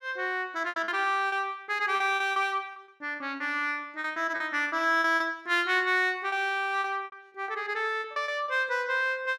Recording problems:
lost packets; 11% of the sound replaced, filled with repeated pitch periods

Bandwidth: 14.5 kHz